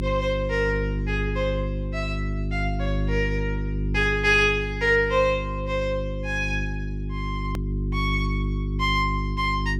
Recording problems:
electrical hum; 50 Hz, harmonics up to 400 Hz, SNR 3 dB
click at an edit; at 7.5 s

